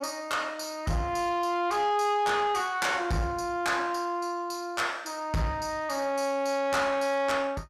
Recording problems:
distortion; soft clipping, signal-to-distortion ratio 11 dB

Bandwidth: 15 kHz